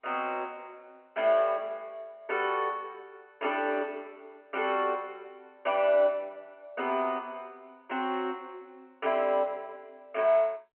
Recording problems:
telephone audio; 220 Hz to 3.1 kHz, G.711

